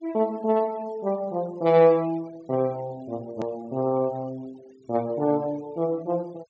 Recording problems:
treble cut off; nothing above 8 kHz
noise reduction artefacts; signal-to-artefact ratio 26 dB
hard cut with a click; at 3.5 s

